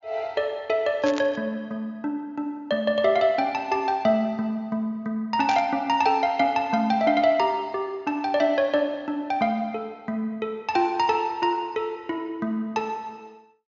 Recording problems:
treble missing; nothing above 7.2 kHz
static burst; at 1 s and at 5.5 s; peak -5 dB vs average level

